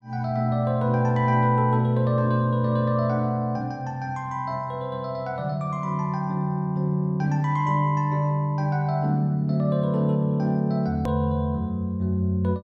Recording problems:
click at an edit; at 11 s

